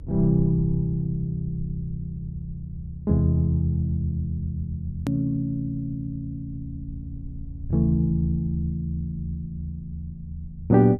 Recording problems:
low-frequency rumble; below 76 Hz, SNR 13 dB
edit click; at 5 s

